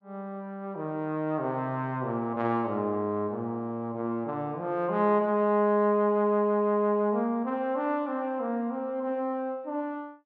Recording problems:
none

